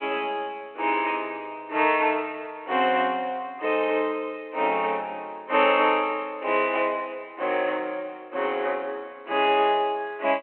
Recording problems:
telephone audio; 320 Hz to 3.3 kHz, G.726

